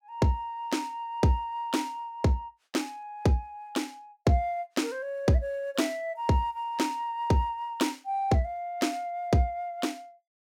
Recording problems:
none

